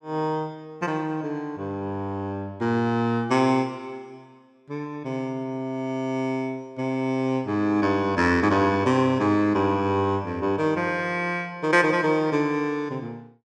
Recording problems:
none

